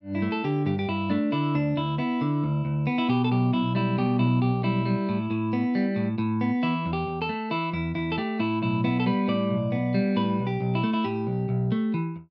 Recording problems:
none

